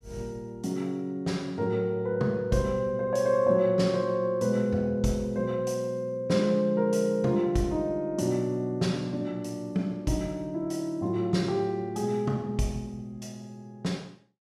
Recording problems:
none

